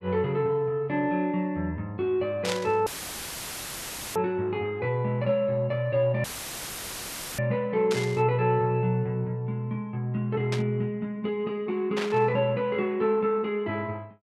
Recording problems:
static burst; 4 times, first at 2.5 s; peak 0 dB vs average level
audio cutting out; at 3 s for 1.5 s and at 6 s for 1 s; filled with static

